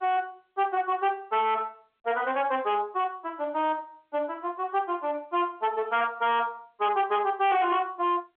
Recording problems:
phone line; 280 Hz to 3.7 kHz, G.711
distortion; hard clipping, uneven, signal-to-distortion ratio 11 dB

